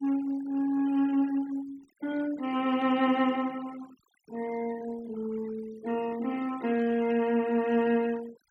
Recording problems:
noise reduction artefacts; signal-to-artefact ratio 21 dB

